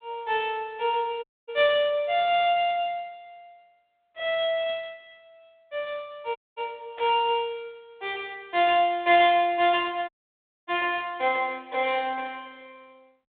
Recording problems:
phone line; 300 Hz to 3.6 kHz, G.726
audio cutting out; at 1 s, at 6.5 s and at 10 s for 0.5 s
static burst; at 7 s; peak -15 dB vs average level

